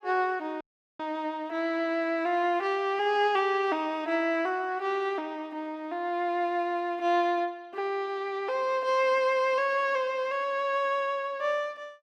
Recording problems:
dropout; at 0.5 s

